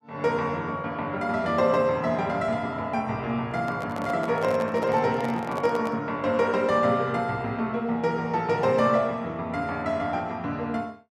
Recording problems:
handling noise; from 3.5 to 6 s; peak -5 dB vs average level

